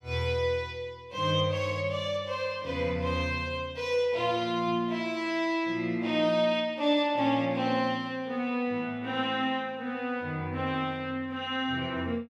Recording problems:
none

